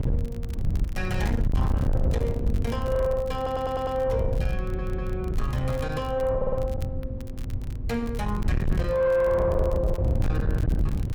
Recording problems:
distorted audio; soft clipping, signal-to-distortion ratio 7 dB
electrical hum; 60 Hz, harmonics up to 1.1 kHz, SNR 21 dB
wind noise; below 110 Hz, SNR 1 dB
crackle; vinyl, SNR 24 dB
audio stuttering; at 3.5 s, at 4.5 s and at 6.5 s

